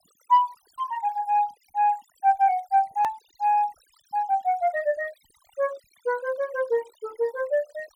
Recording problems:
noise reduction artefacts; signal-to-artefact ratio 26 dB
edit click; at 3 s

